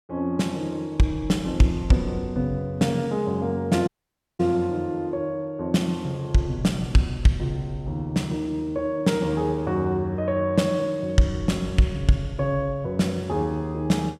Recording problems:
dropout; at 4 s for 0.5 s

